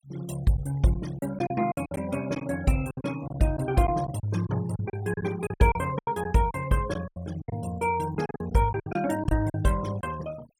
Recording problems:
noise reduction artefacts; signal-to-artefact ratio 19 dB
lost packets; 12% of the sound replaced, filled with silence

